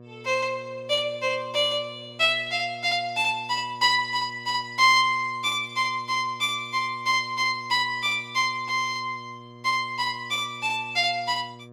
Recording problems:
hum; 60 Hz, harmonics up to 1.2 kHz, SNR 22 dB

